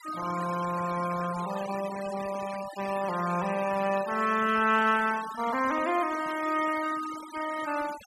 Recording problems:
noise reduction artefacts; signal-to-artefact ratio 13 dB

